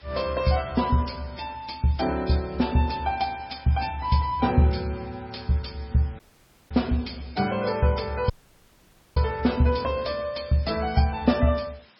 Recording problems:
lossy compression; MP3, log-spectral distance 6 dB, nothing above 5.3 kHz
background hiss; SNR 28 dB
dropout; at 6 s for 0.5 s and at 8.5 s for 1 s

